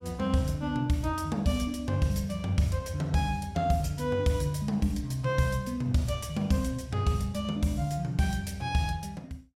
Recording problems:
none

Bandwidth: 16.5 kHz